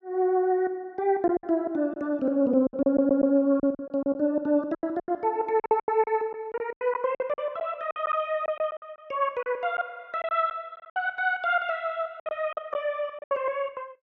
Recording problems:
packet loss; 11% of the sound replaced, filled with silence
audio stuttering; at 3 s

